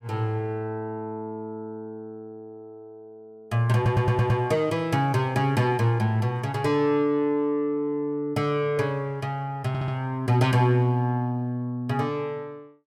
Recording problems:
stutter; at 4 s and at 9.5 s

